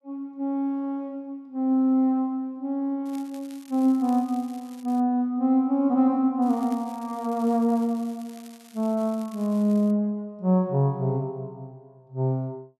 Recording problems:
crackling; from 3 to 5 s and from 6.5 to 10 s; loose cable, SNR 26 dB

